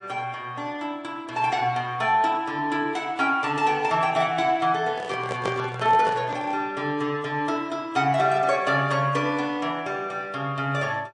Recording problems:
lossy compression; MP3, log-spectral distance 2 dB
microphone handling noise; from 5 to 6.5 s; peak -2 dB vs average level

